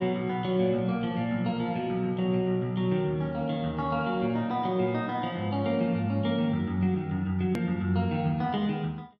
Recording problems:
edit click; at 7.5 s

